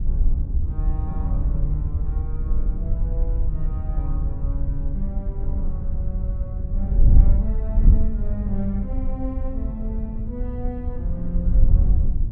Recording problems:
wind noise; below 64 Hz, SNR -9 dB

